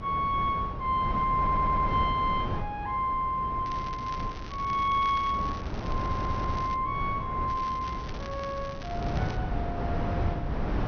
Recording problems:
treble missing; nothing above 6.2 kHz
hum; 60 Hz, harmonics up to 480 Hz, SNR 18 dB
wind noise; below 340 Hz, SNR 5 dB
audio stuttering; at 1.5 s and at 6 s
crackle; from 3.5 to 7 s and from 7.5 to 9.5 s; loose cable, SNR 17 dB

